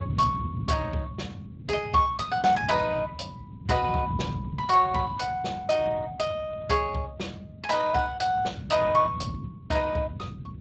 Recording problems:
lossy codec; Speex, log-spectral distance 4 dB, nothing above 7.8 kHz
low-frequency rumble; below 200 Hz, SNR 11 dB

